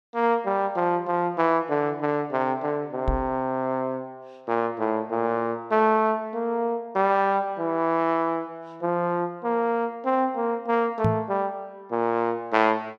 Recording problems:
microphone thump; at 3 s and at 11 s; peak +4 dB vs average level

